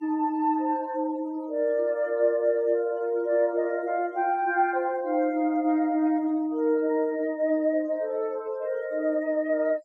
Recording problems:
denoising artefacts; signal-to-artefact ratio 27 dB

